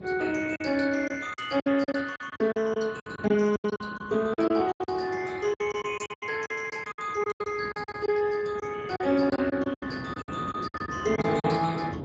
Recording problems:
lossy codec; Speex, log-spectral distance 5 dB, nothing above 7.3 kHz
wind noise; below 470 Hz, SNR 14 dB
packet loss; 16% of the sound replaced, filled with silence

